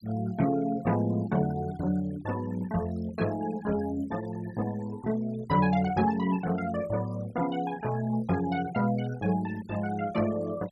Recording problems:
noise reduction artefacts; signal-to-artefact ratio 19 dB

